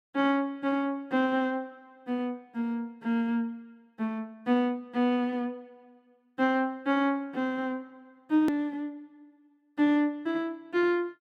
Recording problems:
click at an edit; at 8.5 s

